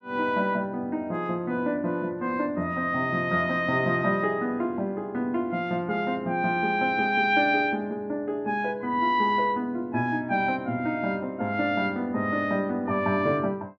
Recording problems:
none

